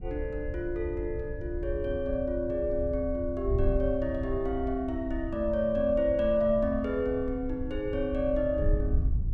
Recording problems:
wind on the microphone; below 76 Hz, SNR 7 dB

